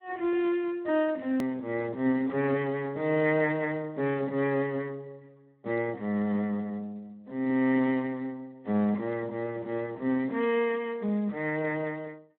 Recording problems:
phone line; 170 Hz to 3.6 kHz, Speex
hard cut with a click; at 1.5 s

